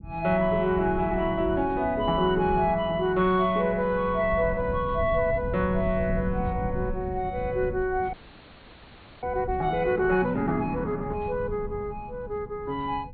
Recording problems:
low-pass filter; nothing above 4.5 kHz
rumble; below 160 Hz, SNR 11 dB
frozen audio; at 8 s for 1 s

